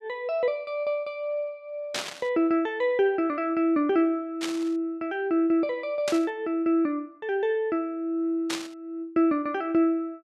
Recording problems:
burst of static; 4 times, first at 2 s; peak +1 dB vs average level

